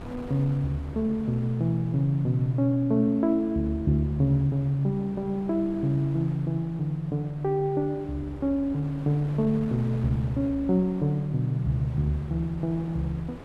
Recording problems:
wind noise; below 590 Hz, SNR 18 dB

